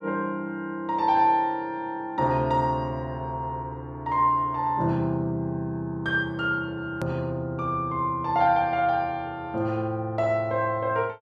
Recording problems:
edit click; at 7 s

